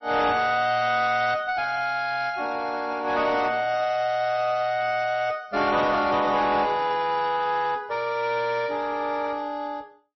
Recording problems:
lossy codec; MP3, log-spectral distance 3 dB, nothing above 5.3 kHz
distorted audio; soft clipping, signal-to-distortion ratio 11 dB

